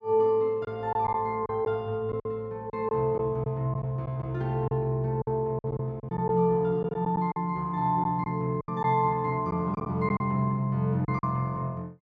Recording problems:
packet loss; 7% of the sound replaced, filled with silence

